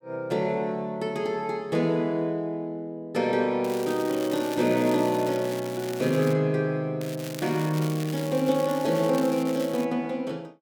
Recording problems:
crackling; from 3.5 to 6.5 s and from 7 to 10 s; loose cable, SNR 15 dB

